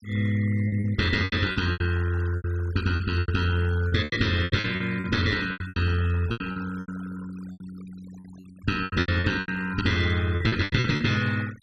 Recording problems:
denoising artefacts; signal-to-artefact ratio 20 dB
lost packets; 16% of the sound replaced, filled with repeated pitch periods

